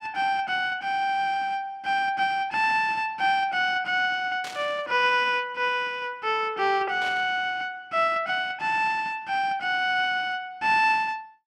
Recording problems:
burst of static; at 4.5 s and at 7 s; peak -9 dB vs average level

